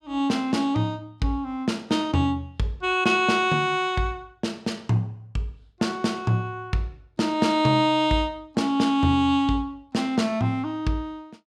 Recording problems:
none

